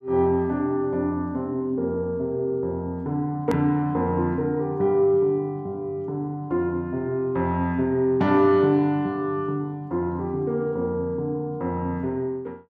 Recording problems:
hard cut with a click; at 3.5 s

